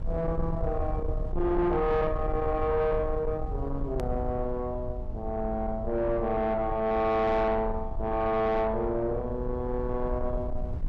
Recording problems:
distortion; soft clipping, signal-to-distortion ratio 11 dB
low-frequency rumble; below 86 Hz, SNR 7 dB
hard cut with a click; at 4 s

